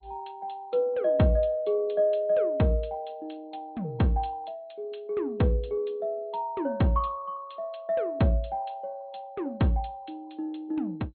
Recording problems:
codec artefacts; MP2, log-spectral distance 3 dB, nothing above 4.2 kHz

